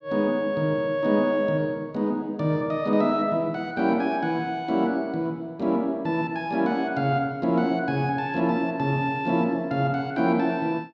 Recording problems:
none

